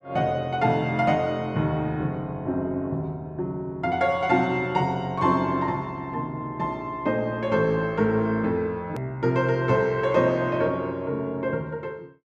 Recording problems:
hard cut with a click; at 9 s

